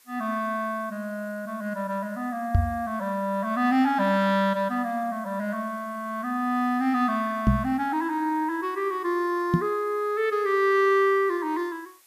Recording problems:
background hiss; slope +1 dB per octave, SNR 29 dB
microphone bump; at 2.5 s, at 7.5 s and at 9.5 s; peak +8 dB vs average level

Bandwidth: 14.5 kHz